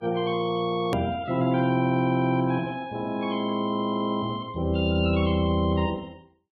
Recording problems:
lossy codec; Vorbis, log-spectral distance 2 dB, nothing above 13.1 kHz
hard cut with a click; at 1 s

